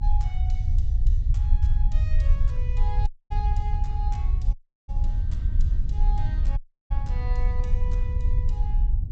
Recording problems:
low-pass filter; nothing above 8 kHz
rumble; below 62 Hz, strongest tone 28 Hz, SNR -14 dB
wind noise; below 64 Hz, SNR -10 dB
audio cutting out; at 3 s, at 4.5 s and at 6.5 s

